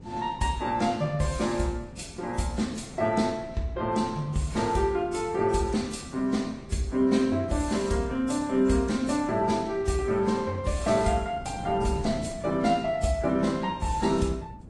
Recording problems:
lossy codec; Vorbis, then AAC, log-spectral distance 3 dB, nothing above 10.4 kHz
wind on the microphone; below 250 Hz, SNR 17 dB

